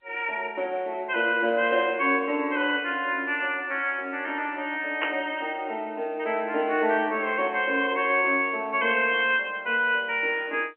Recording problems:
telephone audio; 240 Hz to 3.1 kHz, G.711
burst of static; at 5 s; peak 0 dB vs average level

